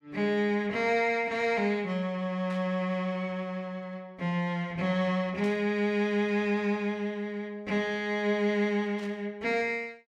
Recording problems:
static burst; at 2.5 s, at 5.5 s and at 9 s; peak -14 dB vs average level

